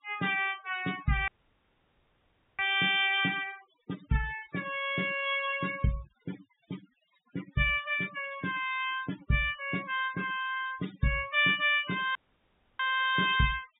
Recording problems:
treble missing; nothing above 4 kHz
noise reduction artefacts; signal-to-artefact ratio 20 dB
dropout; at 1.5 s for 1.5 s and at 12 s for 0.5 s

